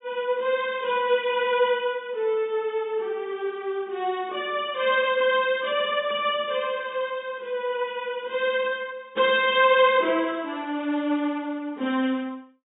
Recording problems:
treble missing; nothing above 4 kHz

